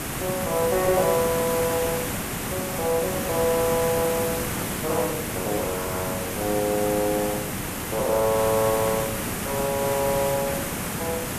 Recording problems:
hiss; slope -4 dB per octave, SNR 2 dB

